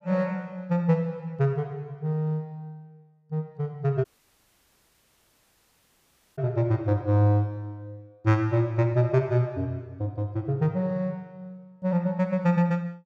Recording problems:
audio cutting out; at 4 s for 2.5 s

